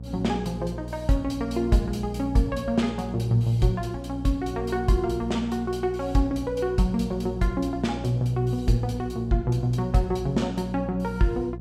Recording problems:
mains hum; 60 Hz, harmonics up to 540 Hz, SNR 10 dB

